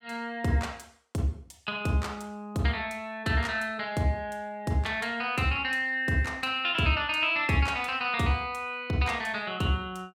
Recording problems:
none

